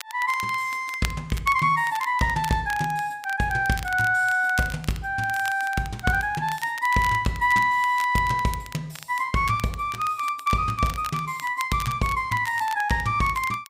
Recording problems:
crackling; vinyl, SNR 16 dB

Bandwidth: 15.5 kHz